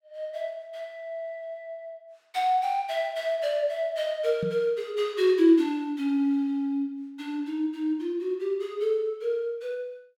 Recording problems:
microphone bump; at 4.5 s; peak -2 dB vs average level

